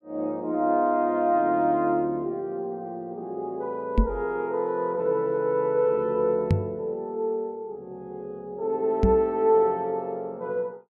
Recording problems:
microphone bump; at 4 s, at 6.5 s and at 9 s; peak +7 dB vs average level

